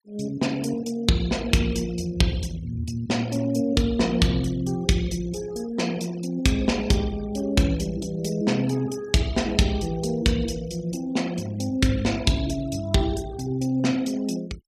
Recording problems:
noise reduction artefacts; signal-to-artefact ratio 20 dB

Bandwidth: 14.5 kHz